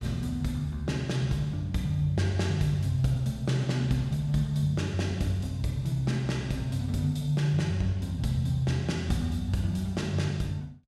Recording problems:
none

